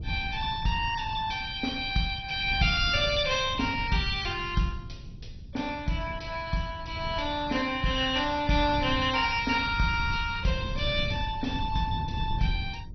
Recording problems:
lossy compression; MP2, log-spectral distance 4 dB, nothing above 5 kHz
wind on the microphone; below 130 Hz, SNR 10 dB

